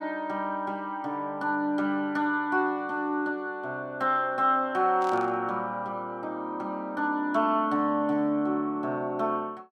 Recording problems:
burst of static; at 5 s; peak -13 dB vs average level

